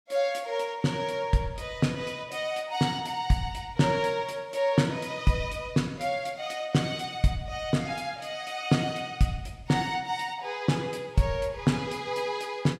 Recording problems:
none

